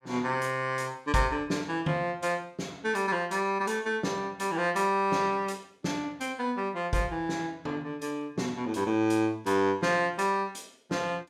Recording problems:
none

